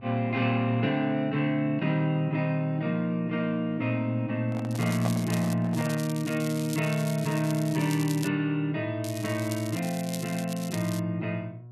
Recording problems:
hum; 60 Hz, harmonics up to 720 Hz, SNR 17 dB
microphone handling noise; from 4.5 to 6 s; peak -2 dB vs average level
crackle; at 4.5 s, from 5.5 to 8.5 s and from 9 to 11 s; loose cable, SNR 13 dB

